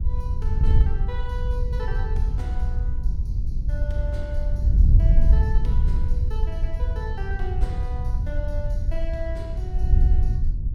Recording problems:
wind noise; below 70 Hz, SNR -12 dB

